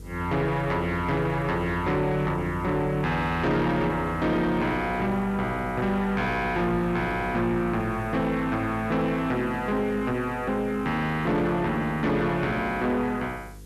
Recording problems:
distorted audio; soft clipping, signal-to-distortion ratio 10 dB
hum; 50 Hz, harmonics up to 500 Hz, SNR 16 dB
hiss; SNR 29 dB

